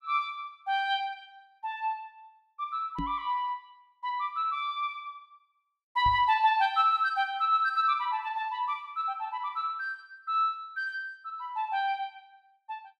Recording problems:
knock on the microphone; at 3 s and at 6 s; peak -2 dB vs average level

